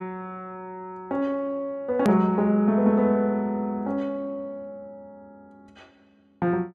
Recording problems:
edit click; at 2 s

